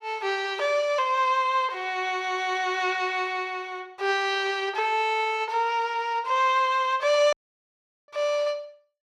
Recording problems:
audio cutting out; at 7.5 s for 1 s

